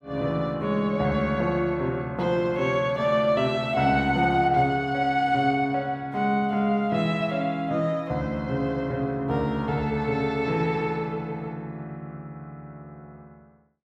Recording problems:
none

